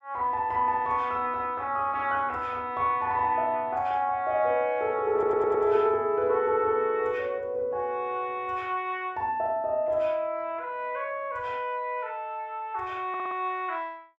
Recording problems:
stutter; at 5 s and at 13 s

